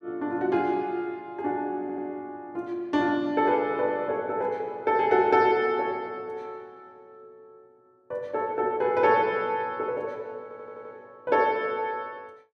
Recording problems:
stutter; at 2 s and at 10 s

